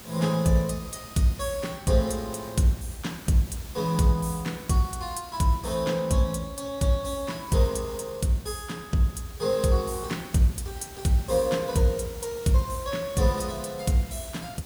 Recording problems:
background hiss; slope -3 dB per octave, SNR 17 dB

